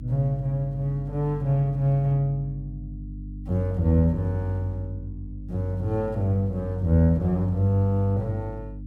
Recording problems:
hum; 50 Hz, harmonics up to 300 Hz, SNR 13 dB

